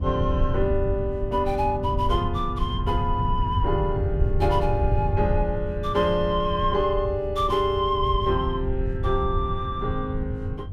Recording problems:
rumble; below 110 Hz, SNR 3 dB

